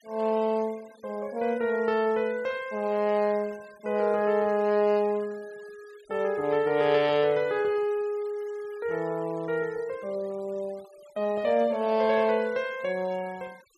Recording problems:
denoising artefacts; signal-to-artefact ratio 25 dB

